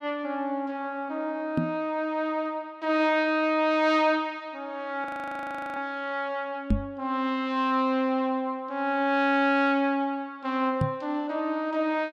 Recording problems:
microphone bump; at 1.5 s, at 6.5 s and at 11 s; peak +6 dB vs average level
frozen audio; at 5 s for 0.5 s

